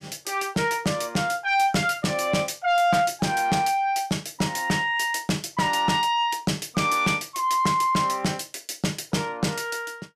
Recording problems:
distorted audio; soft clipping, signal-to-distortion ratio 11 dB

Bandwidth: 15 kHz